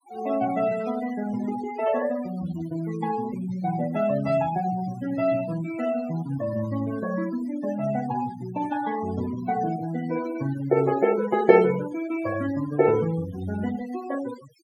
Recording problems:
denoising artefacts; signal-to-artefact ratio 15 dB

